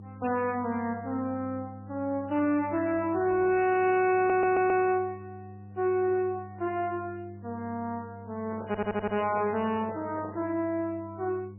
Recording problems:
lossy codec; MP3, log-spectral distance 2 dB, nothing above 2.6 kHz
distorted audio; hard clipping, signal-to-distortion ratio 11 dB
hum; 50 Hz, harmonics up to 500 Hz, SNR 17 dB
stutter; at 4 s and at 8.5 s
microphone handling noise; from 8.5 to 10 s; peak -9 dB vs average level

